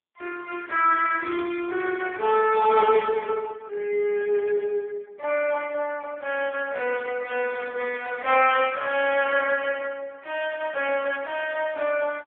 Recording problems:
phone line; 370 Hz to 3 kHz, AMR-NB

